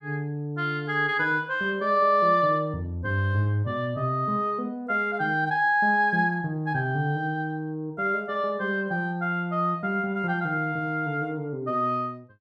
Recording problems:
none

